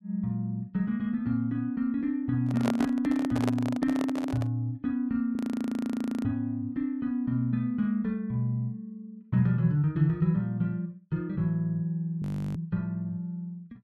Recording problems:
microphone handling noise; from 2.5 to 4.5 s; peak +1 dB vs average level
frozen audio; at 5.5 s for 1 s and at 12 s

